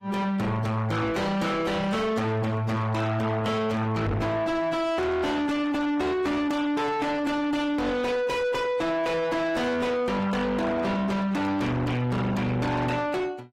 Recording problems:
lossy codec; AAC, log-spectral distance 2 dB, nothing above 15.5 kHz
distorted audio; soft clipping, signal-to-distortion ratio 6 dB
microphone thump; at 4 s; peak +5 dB vs average level

